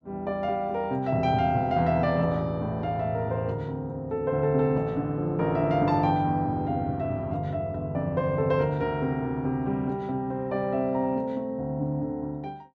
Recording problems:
none

